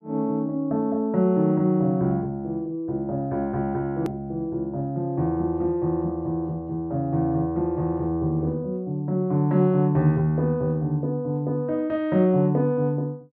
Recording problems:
click at an edit; at 4 s

